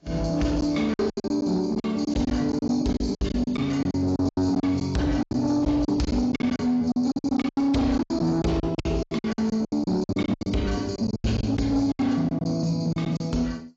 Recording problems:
lossy codec; AAC, log-spectral distance 2 dB, nothing above 7.3 kHz
distortion; soft clipping, signal-to-distortion ratio 12 dB
lost packets; 17% of the sound replaced, filled with silence

